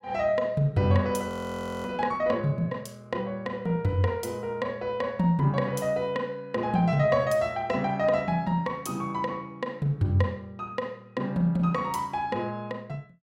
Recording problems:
audio freezing; at 1.5 s for 0.5 s

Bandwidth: 16.5 kHz